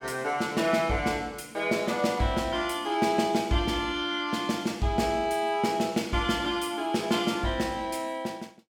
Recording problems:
none

